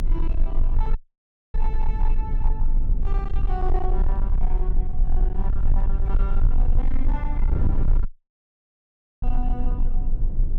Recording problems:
distorted audio; hard clipping, signal-to-distortion ratio 10 dB
hum; 60 Hz, harmonics up to 660 Hz, SNR 21 dB
rumble; below 36 Hz, strongest tone 24 Hz, SNR -11 dB
wind noise; below 110 Hz, SNR -5 dB
dropout; at 1 s for 0.5 s and at 8 s for 1 s

